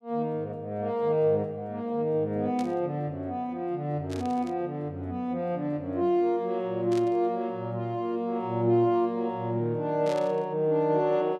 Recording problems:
static burst; 4 times, first at 2.5 s; peak -10 dB vs average level

